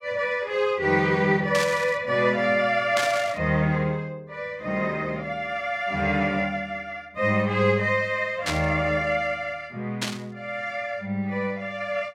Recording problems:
burst of static; 4 times, first at 1.5 s; peak +1 dB vs average level

